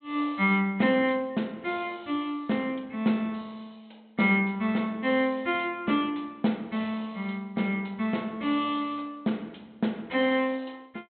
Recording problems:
low-pass filter; nothing above 4 kHz

